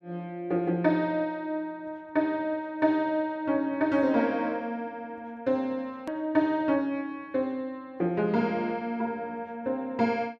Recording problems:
hard cut with a click; at 6 s

